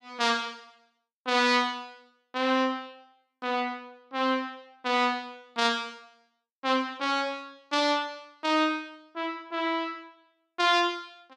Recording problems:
none

